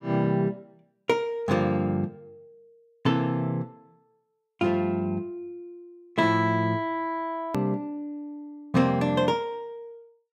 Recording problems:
click at an edit; at 7.5 s

